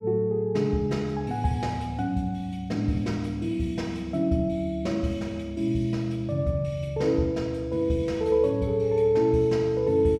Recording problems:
none

